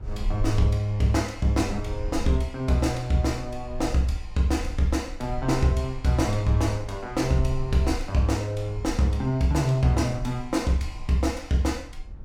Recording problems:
low-frequency rumble; below 54 Hz, SNR 13 dB

